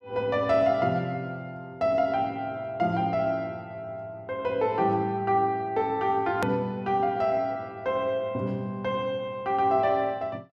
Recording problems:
click at an edit; at 6.5 s

